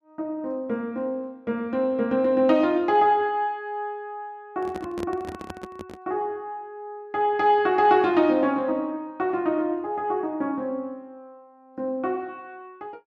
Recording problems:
handling noise; from 4.5 to 6 s; peak -6 dB vs average level

